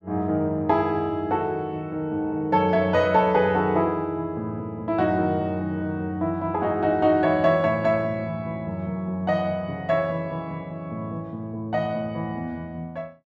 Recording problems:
none

